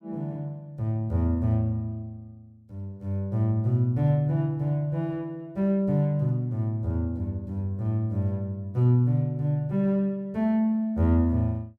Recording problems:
none

